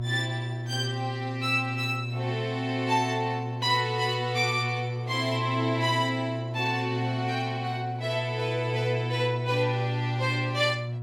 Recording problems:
hum; 60 Hz, harmonics up to 720 Hz, SNR 4 dB

